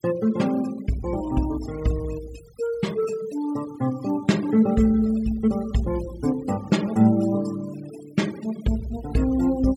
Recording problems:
noise reduction artefacts; signal-to-artefact ratio 20 dB

